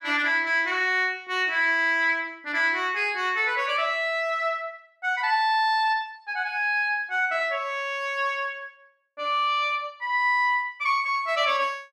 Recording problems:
none

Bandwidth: 14.5 kHz